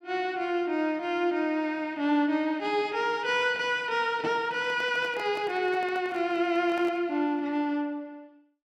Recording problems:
handling noise; from 4.5 to 7 s; peak -9 dB vs average level

